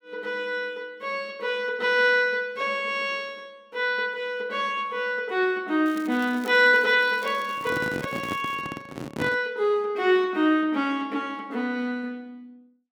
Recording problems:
crackling; from 6 to 8.5 s; loose cable, SNR 23 dB
handling noise; from 7.5 to 9.5 s; peak -2 dB vs average level

